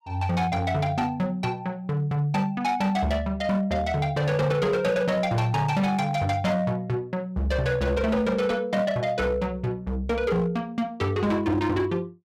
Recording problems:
distorted audio; hard clipping, signal-to-distortion ratio 12 dB

